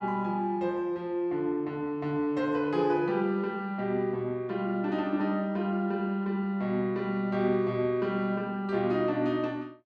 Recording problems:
none

